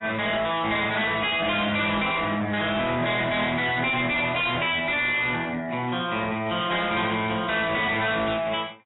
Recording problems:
lossy codec; AAC, log-spectral distance 7 dB, nothing above 3.8 kHz
distortion; hard clipping, signal-to-distortion ratio 5 dB

